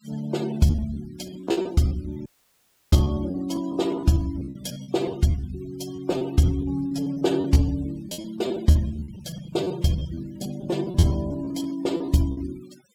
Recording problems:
denoising artefacts; signal-to-artefact ratio 21 dB
lost packets; 16% of the sound replaced, filled with repeated pitch periods
dropout; at 2.5 s for 0.5 s

